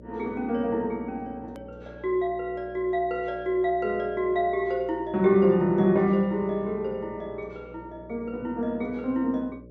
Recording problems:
treble cut off; nothing above 8 kHz
electrical hum; 60 Hz, harmonics up to 600 Hz, SNR 21 dB
click at an edit; at 1.5 s

